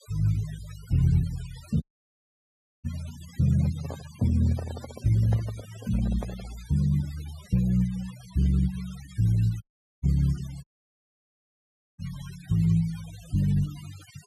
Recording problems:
noise reduction artefacts; signal-to-artefact ratio 21 dB
dropout; at 2 s for 1 s, at 9.5 s and at 11 s for 1.5 s
handling noise; from 3.5 to 6.5 s; peak -7 dB vs average level

